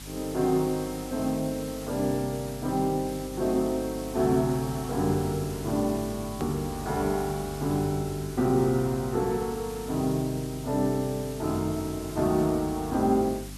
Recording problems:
hum; 50 Hz, harmonics up to 300 Hz, SNR 14 dB
hiss; slope +1 dB per octave, SNR 15 dB
click at an edit; at 6.5 s

